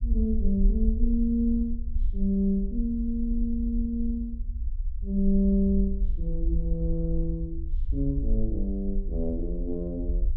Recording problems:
low-frequency rumble; below 54 Hz, SNR 3 dB

